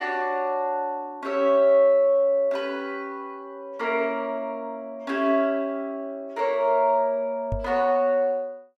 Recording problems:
microphone thump; at 7.5 s; peak -2 dB vs average level

